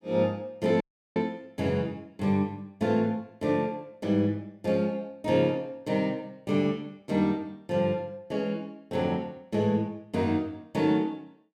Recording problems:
dropout; at 1 s

